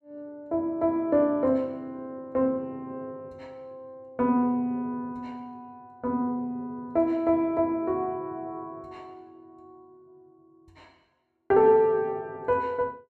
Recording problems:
none

